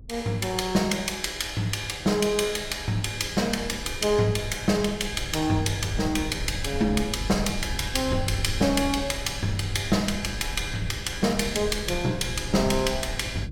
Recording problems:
rumble; below 110 Hz, SNR 11 dB

